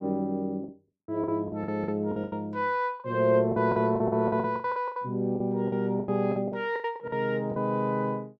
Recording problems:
packet loss; 16% of the sound replaced, filled with the last packet

